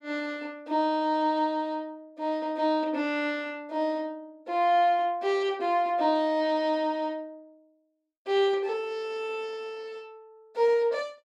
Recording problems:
none

